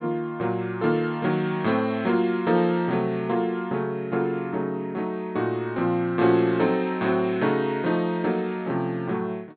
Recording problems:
treble cut off; nothing above 4.3 kHz

